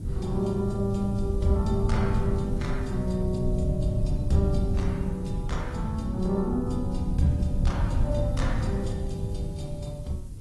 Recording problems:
lossy compression; AAC, log-spectral distance 2 dB, nothing above 11.3 kHz
background hiss; SNR 27 dB
wind on the microphone; below 120 Hz, SNR 1 dB

